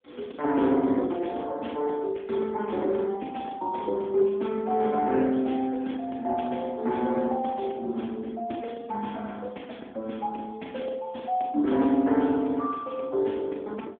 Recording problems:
telephone audio; 220 Hz to 3.5 kHz, AMR-NB

